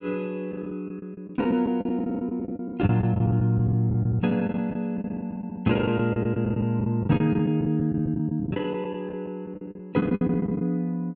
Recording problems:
lost packets; 17% of the sound replaced, filled with the last packet

